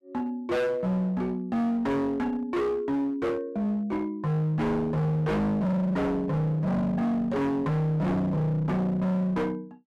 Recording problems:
distortion; hard clipping, uneven, signal-to-distortion ratio 6 dB

